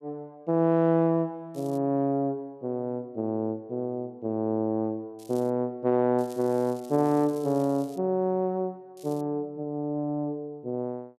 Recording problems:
crackling; 4 times, first at 1.5 s; loose cable, SNR 25 dB

